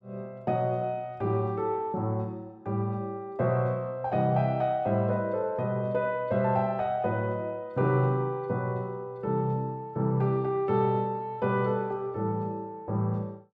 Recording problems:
none

